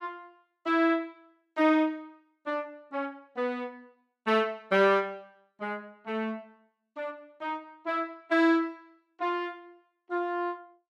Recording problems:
none

